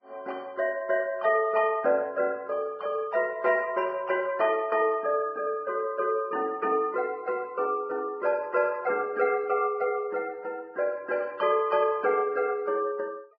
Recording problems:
codec artefacts; Vorbis, log-spectral distance 2 dB

